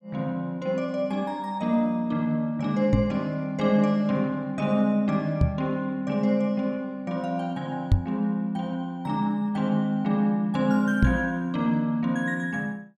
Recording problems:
microphone thump; 4 times, first at 3 s; peak +9 dB vs average level

